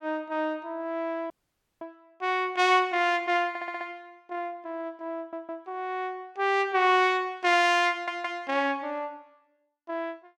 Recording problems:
audio cutting out; at 1.5 s for 0.5 s
stutter; at 3.5 s, at 5 s and at 8 s

